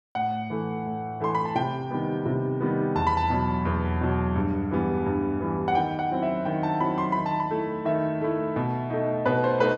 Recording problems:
none

